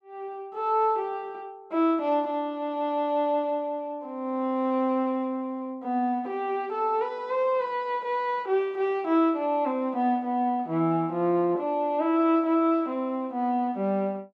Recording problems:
none

